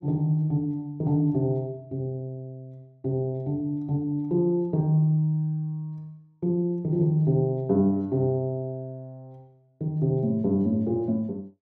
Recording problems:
none

